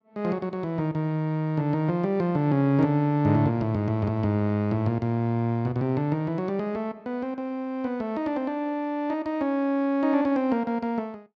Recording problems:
none

